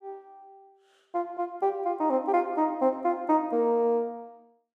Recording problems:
none

